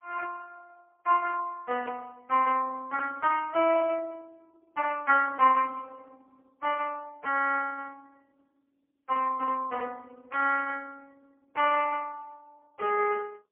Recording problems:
telephone audio; 370 Hz to 2.5 kHz, AMR-NB, then MP3

